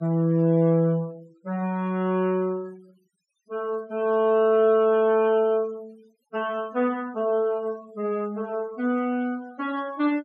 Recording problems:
noise reduction artefacts; signal-to-artefact ratio 27 dB

